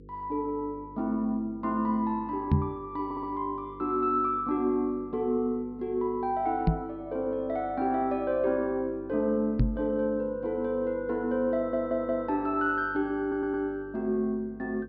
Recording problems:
treble missing; nothing above 5.5 kHz
electrical hum; 50 Hz, harmonics up to 500 Hz, SNR 20 dB
microphone bump; at 2.5 s, at 6.5 s and at 9.5 s; peak +9 dB vs average level
stutter; at 3 s, at 12 s and at 13 s

